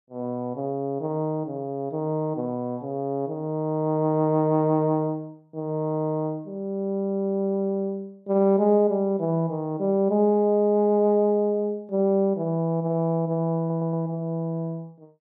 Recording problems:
stutter; at 14 s

